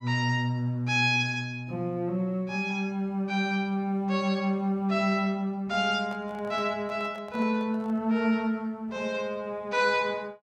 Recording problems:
handling noise; from 6 to 8 s; peak -12 dB vs average level

